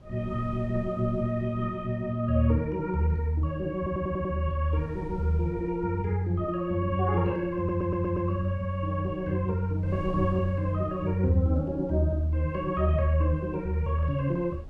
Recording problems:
wind on the microphone; below 120 Hz, SNR 18 dB
stutter; at 4 s and at 7.5 s

